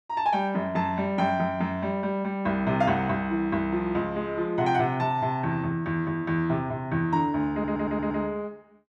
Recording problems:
audio stuttering; at 7.5 s

